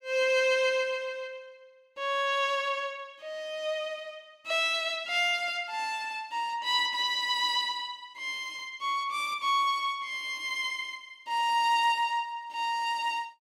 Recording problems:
none

